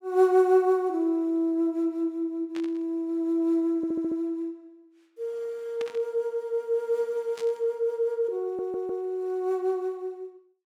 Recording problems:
static burst; at 2.5 s, at 6 s and at 7.5 s; peak -10 dB vs average level
audio stuttering; at 4 s and at 8.5 s

